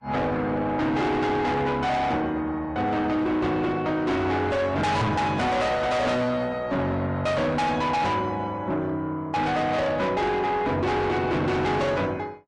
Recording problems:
lossy codec; Vorbis, log-spectral distance 2 dB, nothing above 10.1 kHz
distortion; soft clipping, signal-to-distortion ratio 6 dB
knock on the microphone; at 5 s; peak +5 dB vs average level

